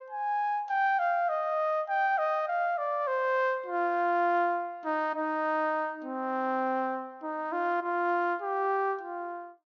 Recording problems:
low-pass filter; nothing above 6.7 kHz

